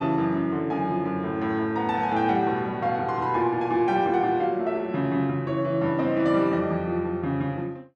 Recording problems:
none

